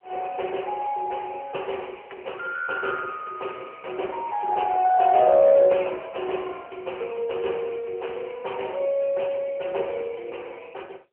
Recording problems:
telephone audio; 340 Hz to 3.2 kHz, AMR-NB

